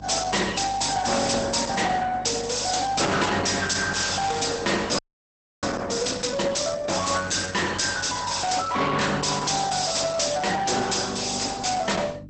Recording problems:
lossy codec; Opus, log-spectral distance 10 dB, nothing above 8.2 kHz
distorted audio; soft clipping, signal-to-distortion ratio 6 dB
hum; 50 Hz, harmonics up to 300 Hz, SNR 18 dB
frozen audio; at 5 s for 0.5 s

